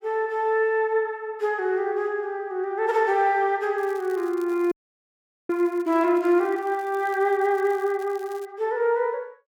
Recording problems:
crackle; from 4 to 6 s and from 6.5 to 8.5 s; loose cable, SNR 28 dB
audio freezing; at 4.5 s for 1 s

